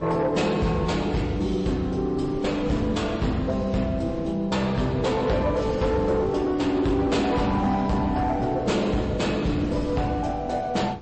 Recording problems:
lossy compression; MP3, log-spectral distance 2 dB, nothing above 8.2 kHz
distortion; soft clipping, signal-to-distortion ratio 12 dB
wind on the microphone; below 370 Hz, SNR 12 dB

